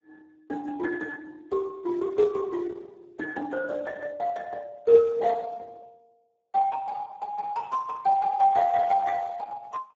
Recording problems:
lossy compression; Opus, then Speex, log-spectral distance 3 dB, nothing above 7.3 kHz

